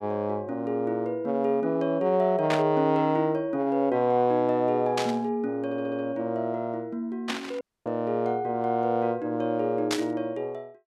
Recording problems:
static burst; 4 times, first at 2.5 s; peak +1 dB vs average level
stutter; at 5.5 s
dropout; at 7.5 s

